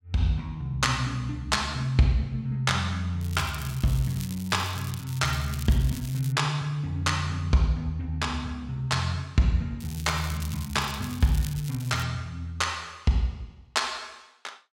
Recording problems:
crackling; from 3 to 6.5 s and from 10 to 12 s; loose cable, SNR 15 dB

